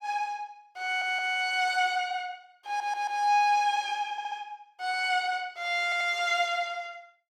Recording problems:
stutter; 4 times, first at 1 s

